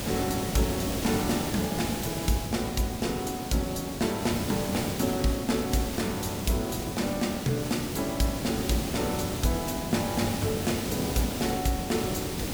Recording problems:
background hiss; SNR 3 dB

